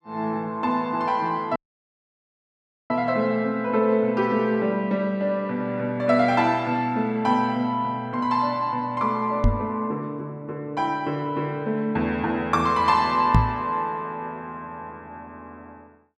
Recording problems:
dropout; at 1.5 s for 1.5 s
microphone bump; at 9.5 s and at 13 s; peak +8 dB vs average level

